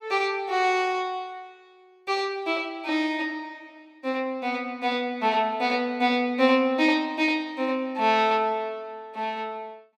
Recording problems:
none

